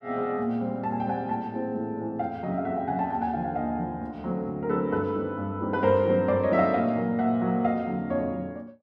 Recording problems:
none

